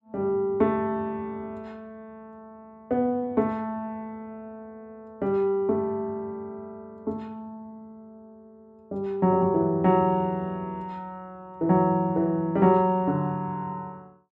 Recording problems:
none

